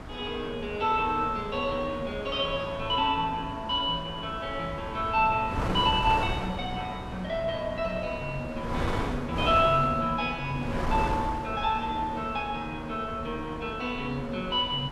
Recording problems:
wind on the microphone; below 920 Hz, SNR 8 dB

